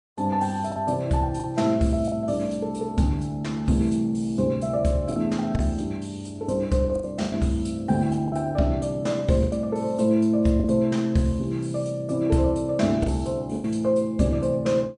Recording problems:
lossy codec; MP3, log-spectral distance 2 dB
lost packets; 4% of the sound replaced, filled with the last packet

